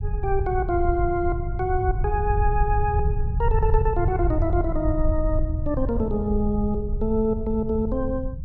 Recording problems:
rumble; below 84 Hz, SNR 2 dB

